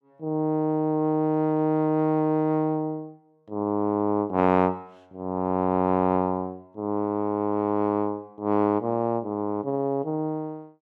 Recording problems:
none

